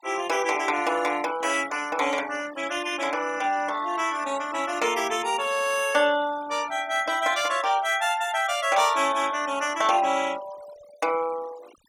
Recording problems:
denoising artefacts; signal-to-artefact ratio 17 dB

